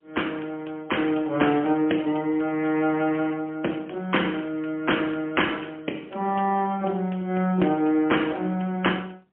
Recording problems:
phone line; 220 Hz to 3.3 kHz, AMR-NB, then MP3

